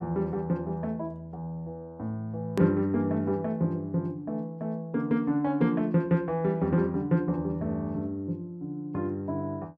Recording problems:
click at an edit; at 2.5 s

